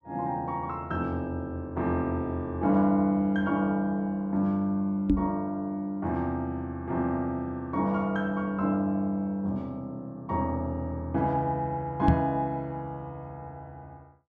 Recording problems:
microphone bump; at 5 s and at 12 s; peak +8 dB vs average level

